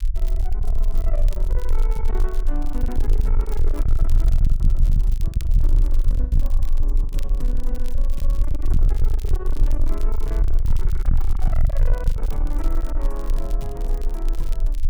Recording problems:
distortion; soft clipping, signal-to-distortion ratio 6 dB
low-frequency rumble; below 38 Hz, strongest tone 22 Hz, SNR -11 dB
crackling; vinyl, SNR 13 dB
packet loss; 5% of the sound replaced, filled with the last packet

